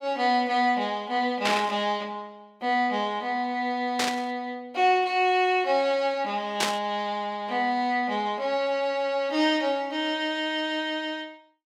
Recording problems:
burst of static; at 1.5 s, at 4 s and at 6.5 s; peak +4 dB vs average level

